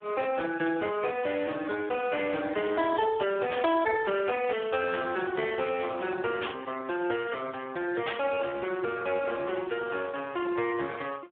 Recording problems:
telephone audio; 280 Hz to 2.8 kHz, Speex
burst of static; at 3.5 s, at 6.5 s and at 8 s; peak -1 dB vs average level

